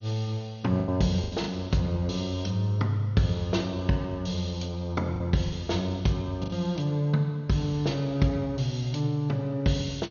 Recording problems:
codec artefacts; MP2, log-spectral distance 2 dB, nothing above 6.7 kHz
lost packets; 4% of the sound replaced, filled with the last packet

